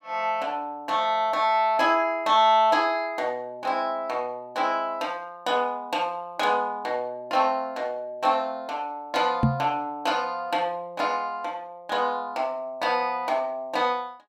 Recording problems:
microphone bump; at 9.5 s; peak +7 dB vs average level

